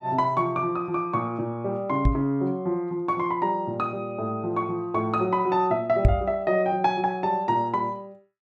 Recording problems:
microphone bump; at 2 s and at 6 s; peak +10 dB vs average level

